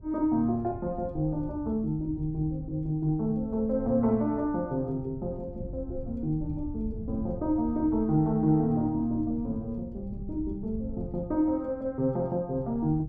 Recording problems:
wind noise; below 110 Hz, SNR 14 dB

